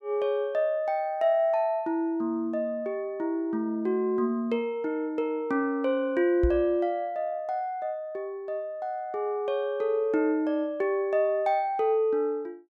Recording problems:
microphone bump; at 6.5 s; peak +4 dB vs average level

